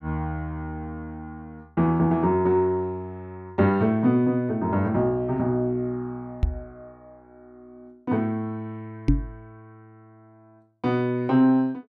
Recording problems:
microphone thump; at 6.5 s and at 9 s; peak +7 dB vs average level

